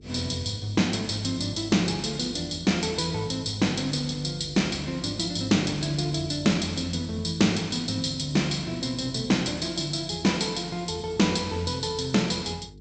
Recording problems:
treble missing; nothing above 8 kHz
electrical hum; 50 Hz, harmonics up to 450 Hz, SNR 22 dB

